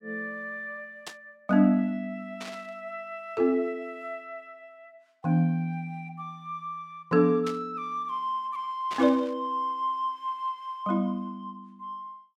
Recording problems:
static burst; 4 times, first at 1 s; peak -5 dB vs average level

